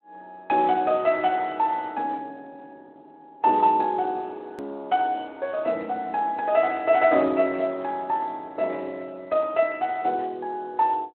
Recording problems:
telephone audio; 240 Hz to 3.3 kHz, Speex
hard cut with a click; at 4.5 s

